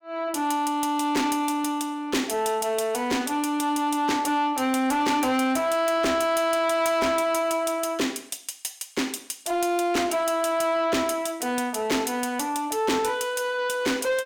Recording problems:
distortion; soft clipping, signal-to-distortion ratio 11 dB

